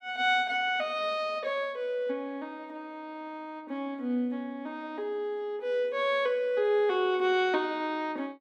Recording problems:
none

